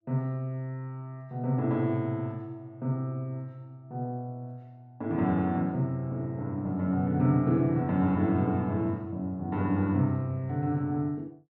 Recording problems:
none

